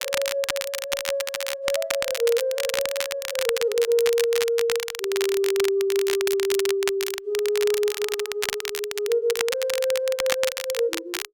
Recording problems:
crackle; vinyl, SNR 5 dB

